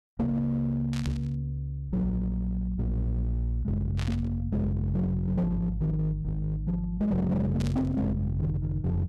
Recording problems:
distorted audio; hard clipping, signal-to-distortion ratio 11 dB
burst of static; at 1 s, at 4 s and at 7.5 s; peak -7 dB vs average level

